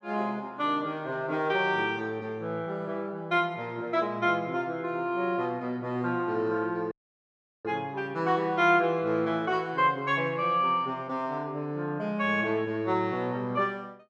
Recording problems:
dropout; at 7 s for 0.5 s

